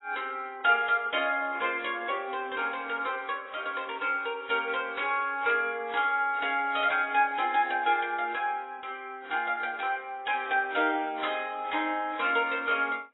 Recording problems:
codec artefacts; AAC, log-spectral distance 3 dB, nothing above 3.8 kHz

